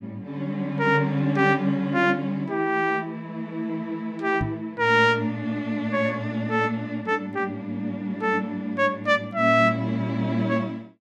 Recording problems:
microphone thump; at 4.5 s; peak +1 dB vs average level

